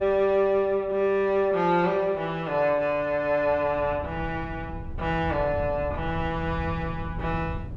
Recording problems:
wind on the microphone; below 130 Hz, SNR 12 dB

